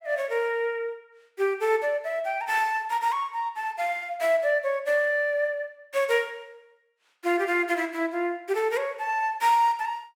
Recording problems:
none

